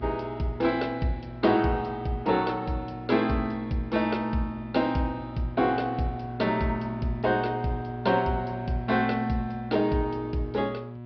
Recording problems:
treble cut off; nothing above 5.5 kHz
codec artefacts; MP2, log-spectral distance 2 dB
hum; 60 Hz, harmonics up to 1.3 kHz, SNR 11 dB

